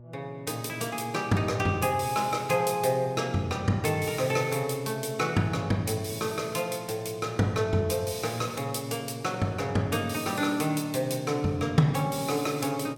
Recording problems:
hum; 60 Hz, harmonics up to 840 Hz, SNR 21 dB

